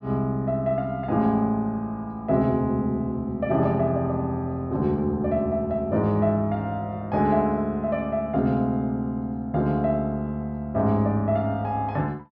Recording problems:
treble cut off; nothing above 6.4 kHz

